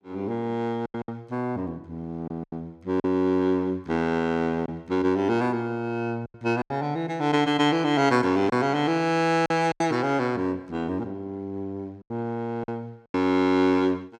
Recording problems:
lost packets; 6% of the sound replaced, filled with silence

